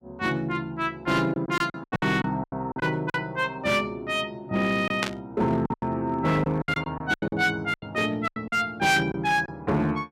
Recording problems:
distorted audio; hard clipping, signal-to-distortion ratio 11 dB
lost packets; 11% of the sound replaced, filled with silence
static burst; at 5 s; peak +3 dB vs average level

